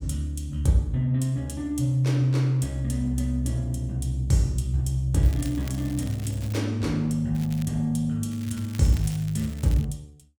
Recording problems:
crackling; from 5 to 6.5 s, at 7.5 s and from 8.5 to 10 s; loose cable, SNR 20 dB

